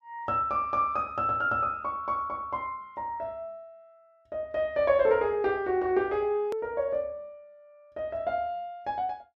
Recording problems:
hard cut with a click; at 6.5 s

